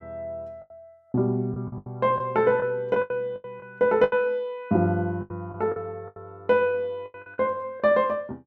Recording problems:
lost packets; 12% of the sound replaced, filled with the last packet

